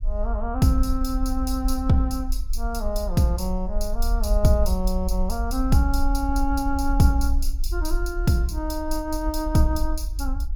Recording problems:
low-frequency rumble; below 50 Hz, SNR 4 dB

